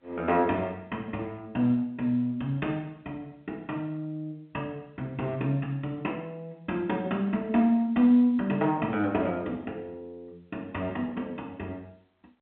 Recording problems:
phone line; 190 Hz to 3.6 kHz, G.711

